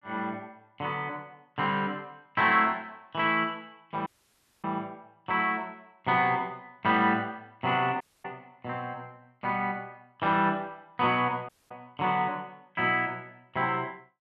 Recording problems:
audio cutting out; at 4 s for 0.5 s, at 8 s and at 11 s

